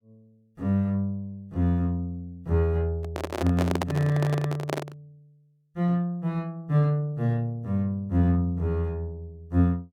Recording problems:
handling noise; from 3 to 5 s; peak +2 dB vs average level

